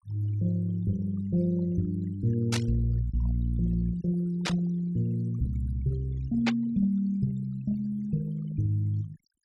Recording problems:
denoising artefacts; signal-to-artefact ratio 20 dB
burst of static; at 2.5 s, at 4.5 s and at 6.5 s; peak +3 dB vs average level

